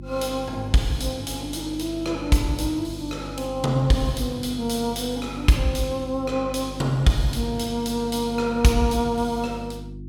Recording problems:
hum; 50 Hz, harmonics up to 350 Hz, SNR 13 dB

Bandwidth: 18 kHz